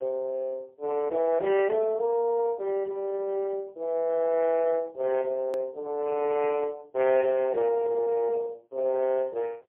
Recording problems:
phone line; 300 Hz to 3.1 kHz, AMR-NB, then MP3
click at an edit; at 5.5 s

